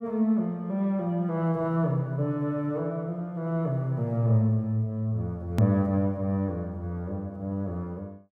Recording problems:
edit click; at 5.5 s

